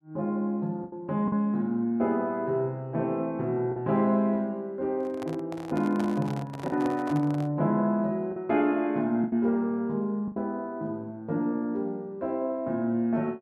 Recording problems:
packet loss; 3% of the sound replaced, filled with the last packet
microphone handling noise; from 5 to 7.5 s; peak -5 dB vs average level

